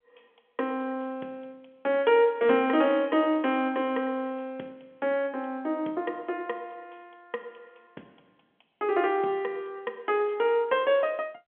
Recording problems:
telephone audio; 190 Hz to 3.3 kHz, G.711

